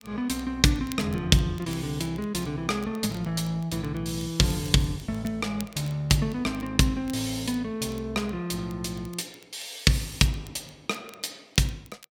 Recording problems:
crackling; vinyl, SNR 23 dB

